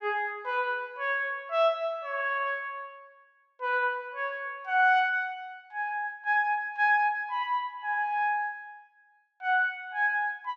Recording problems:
none

